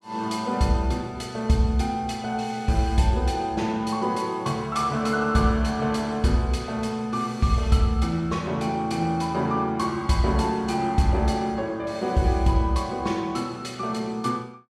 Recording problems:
none

